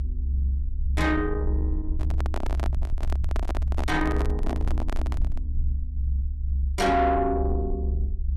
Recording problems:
distortion; soft clipping, signal-to-distortion ratio 11 dB
rumble; below 68 Hz, strongest tone 68 Hz, SNR 1 dB
microphone handling noise; from 2 to 5.5 s; peak -2 dB vs average level

